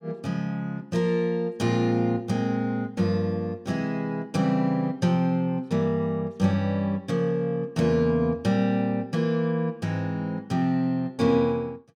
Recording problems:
none

